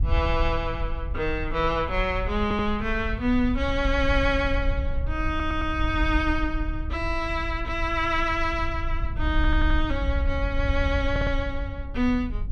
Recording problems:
wind on the microphone; below 68 Hz, SNR 4 dB
stutter; 4 times, first at 2.5 s

